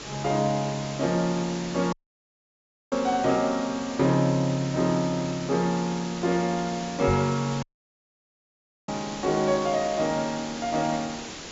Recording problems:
treble cut off; nothing above 7.4 kHz
hiss; SNR 11 dB
audio cutting out; at 2 s for 1 s and at 7.5 s for 1.5 s
crackling; from 5 to 7.5 s and from 9 to 11 s; loose cable, SNR 26 dB
knock on the microphone; at 7 s; peak -1 dB vs average level

